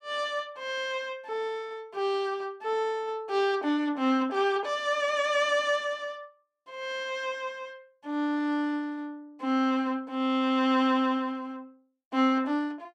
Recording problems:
none

